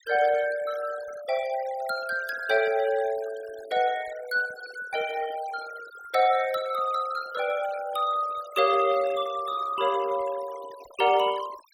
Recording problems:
noise reduction artefacts; signal-to-artefact ratio 18 dB

